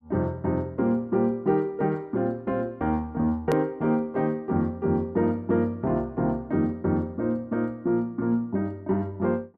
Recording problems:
hard cut with a click; at 3.5 s

